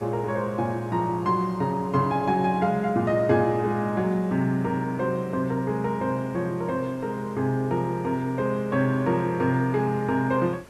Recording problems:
background hiss; slope -5 dB per octave, SNR 24 dB

